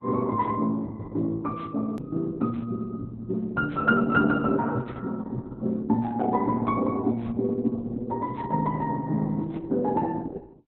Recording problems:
codec artefacts; Opus, log-spectral distance 2 dB
click at an edit; at 2 s

